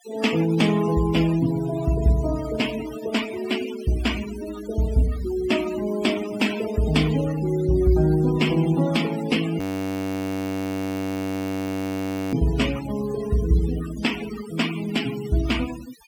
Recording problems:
noise reduction artefacts; signal-to-artefact ratio 13 dB
audio freezing; at 9.5 s for 2.5 s

